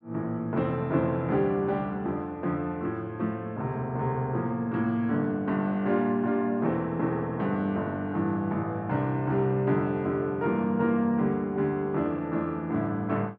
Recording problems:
none

